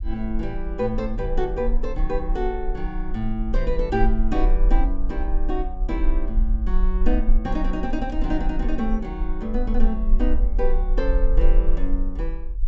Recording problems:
treble missing; nothing above 8 kHz
rumble; below 38 Hz, strongest tone 22 Hz, SNR -2 dB

